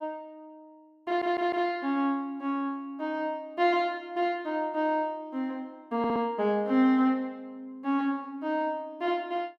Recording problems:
audio stuttering; at 1 s and at 6 s

